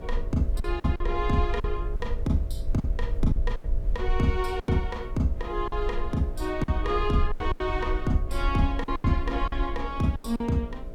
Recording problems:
electrical hum; 60 Hz, harmonics up to 660 Hz, SNR 16 dB
hiss; slope -8 dB per octave, SNR 25 dB
rumble; below 50 Hz, SNR 5 dB
packet loss; 9% of the sound replaced, filled with silence

